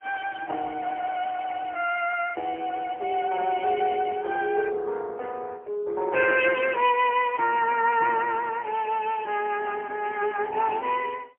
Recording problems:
phone line; 300 Hz to 2.9 kHz, AMR-NB, then MP3

